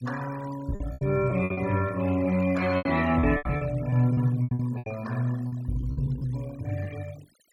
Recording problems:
noise reduction artefacts; signal-to-artefact ratio 19 dB
lost packets; 13% of the sound replaced, filled with repeated pitch periods

